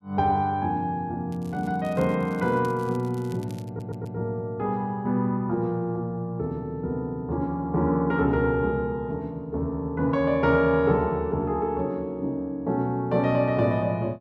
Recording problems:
crackle; from 1.5 to 4 s; loose cable, SNR 27 dB
stutter; at 3.5 s

